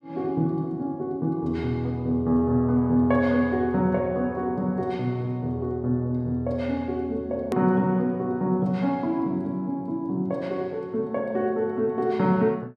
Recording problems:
click at an edit; at 7.5 s

